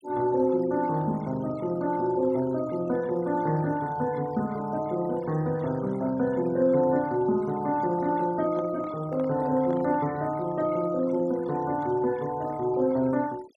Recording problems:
noise reduction artefacts; signal-to-artefact ratio 23 dB
microphone handling noise; from 8 to 10 s; peak -11 dB vs average level

